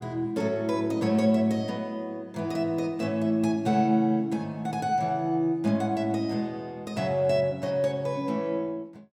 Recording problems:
none

